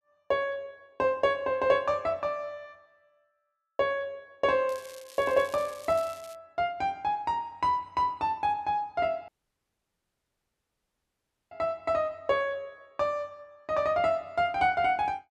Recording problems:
crackling; from 4.5 to 6.5 s; loose cable, SNR 20 dB
dropout; at 9.5 s for 2 s

